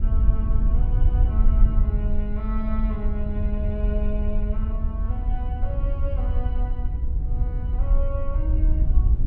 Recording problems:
wind noise; below 62 Hz, SNR -10 dB

